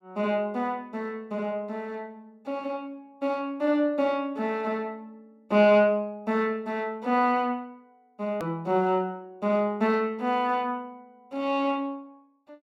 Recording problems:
click at an edit; at 8.5 s

